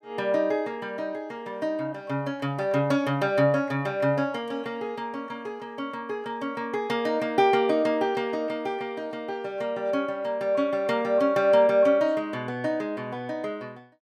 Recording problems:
none

